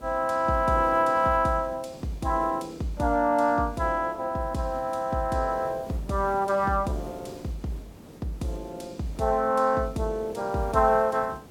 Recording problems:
hiss; SNR 20 dB

